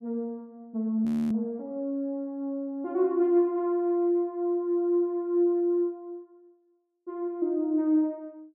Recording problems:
frozen audio; at 1 s

